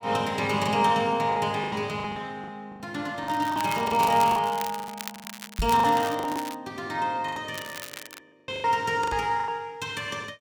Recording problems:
packet loss; 13% of the sound replaced, filled with the last packet
crackle; from 3.5 to 6.5 s and at 7.5 s; loose cable, SNR 13 dB
knock on the microphone; at 5.5 s and at 9 s; peak 0 dB vs average level

